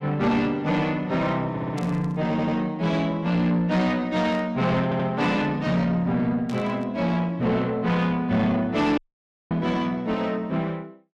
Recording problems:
distortion; soft clipping, signal-to-distortion ratio 10 dB
audio stuttering; at 1.5 s, at 2.5 s and at 5 s
burst of static; at 2 s, at 4.5 s and at 6.5 s; peak -13 dB vs average level
audio cutting out; at 9 s for 0.5 s

